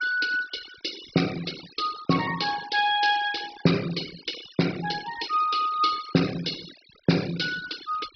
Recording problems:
treble missing; nothing above 5.5 kHz
denoising artefacts; signal-to-artefact ratio 13 dB

